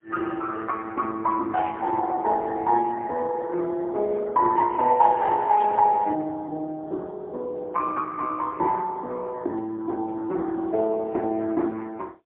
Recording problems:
telephone audio; 280 Hz to 3.4 kHz, AMR-NB, then MP3
static burst; at 1.5 s and at 5.5 s; peak -14 dB vs average level

